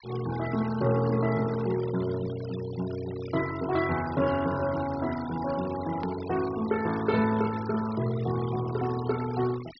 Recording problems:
treble cut off; nothing above 5.5 kHz
noise reduction artefacts; signal-to-artefact ratio 16 dB
hard cut with a click; at 6 s

